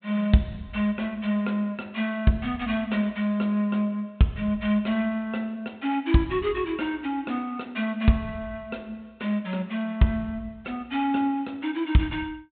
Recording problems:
treble missing; nothing above 4 kHz

